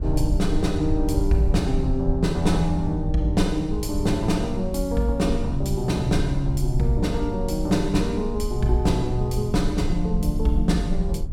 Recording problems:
rumble; below 68 Hz, SNR 5 dB

